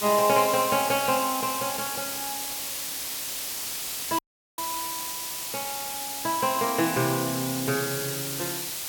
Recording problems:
background hiss; slope +1 dB per octave, SNR 3 dB
audio cutting out; at 4 s

